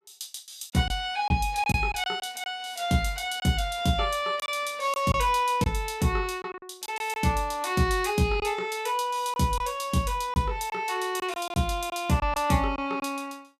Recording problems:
packet loss; 5% of the sound replaced, filled with silence

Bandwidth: 14.5 kHz